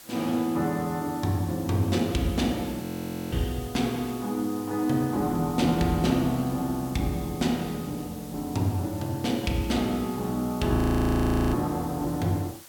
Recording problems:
hiss; slope 0 dB per octave, SNR 18 dB
audio freezing; at 3 s and at 11 s for 1 s

